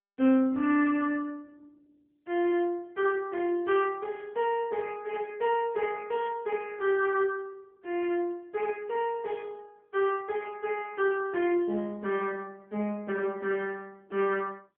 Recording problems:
phone line; 240 Hz to 3.3 kHz, AMR-NB

